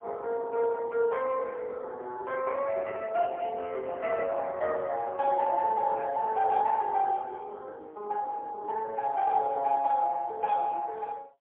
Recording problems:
phone line; 370 Hz to 3.3 kHz, AMR-NB, then MP3

